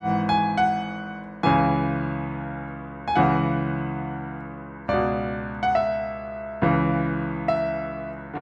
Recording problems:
none

